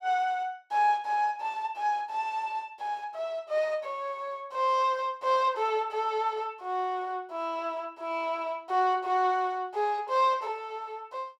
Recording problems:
none

